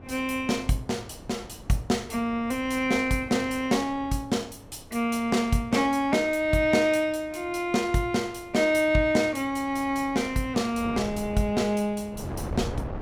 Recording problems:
wind noise; below 460 Hz, SNR 17 dB

